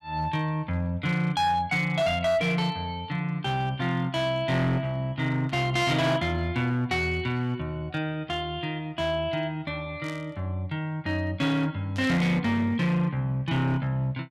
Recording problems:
distortion; hard clipping, uneven, signal-to-distortion ratio 12 dB
burst of static; at 5.5 s, at 10 s and at 12 s; peak -12 dB vs average level

